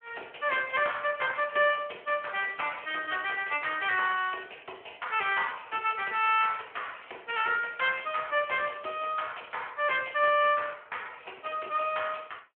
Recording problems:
telephone audio; 320 Hz to 3.3 kHz, Speex

